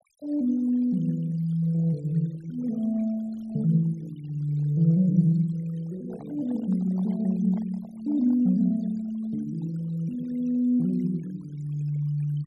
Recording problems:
noise reduction artefacts; signal-to-artefact ratio 25 dB
microphone handling noise; from 6 to 8.5 s; peak -15 dB vs average level

